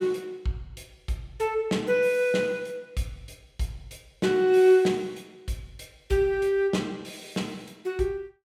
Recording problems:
none

